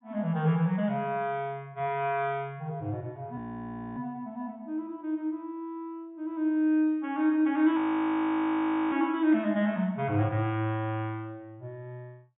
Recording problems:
low-pass filter; nothing above 4 kHz
audio freezing; at 3.5 s for 0.5 s and at 8 s for 1 s

